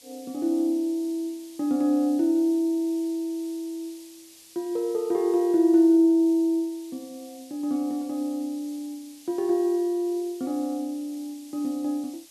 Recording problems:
background hiss; SNR 23 dB

